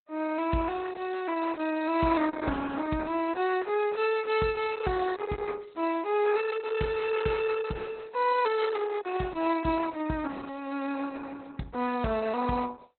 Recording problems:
lossy codec; Opus, log-spectral distance 4 dB, nothing above 4.1 kHz

